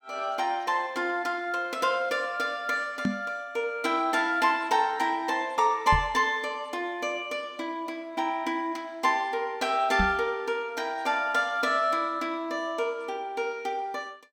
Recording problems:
microphone bump; at 3 s, at 6 s and at 10 s; peak +3 dB vs average level

